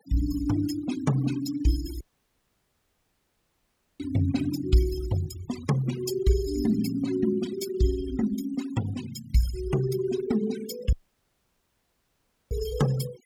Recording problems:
noise reduction artefacts; signal-to-artefact ratio 13 dB
audio cutting out; at 2 s for 2 s and at 11 s for 1.5 s

